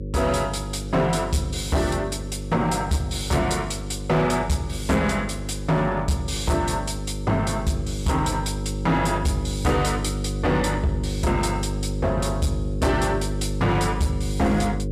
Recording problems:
distortion; hard clipping, signal-to-distortion ratio 11 dB
hum; 50 Hz, harmonics up to 550 Hz, SNR 6 dB

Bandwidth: 14 kHz